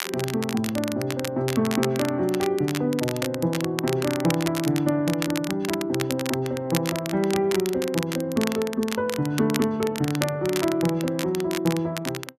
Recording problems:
crackle; vinyl, SNR 8 dB

